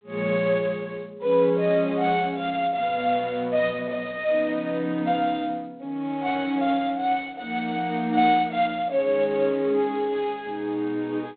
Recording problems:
phone line; 190 Hz to 3.7 kHz, G.726

